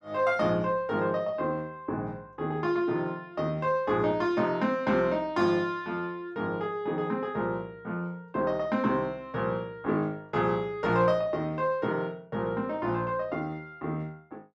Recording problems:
none

